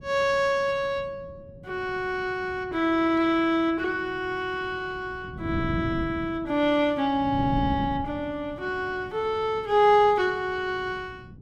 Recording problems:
wind on the microphone; below 220 Hz, SNR 14 dB

